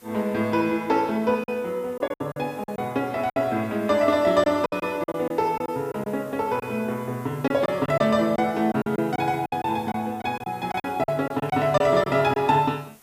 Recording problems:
background hiss; slope -3 dB per octave, SNR 27 dB
lost packets; 9% of the sound replaced, filled with silence

